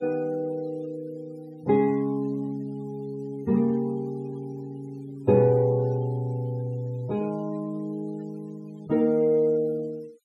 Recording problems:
noise reduction artefacts; signal-to-artefact ratio 26 dB

